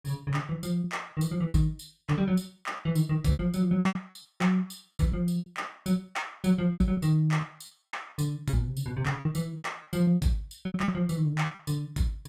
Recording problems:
lost packets; 12% of the sound replaced, filled with repeated pitch periods

